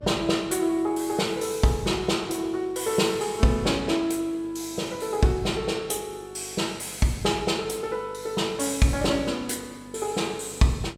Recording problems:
hum; 50 Hz, harmonics up to 750 Hz, SNR 24 dB

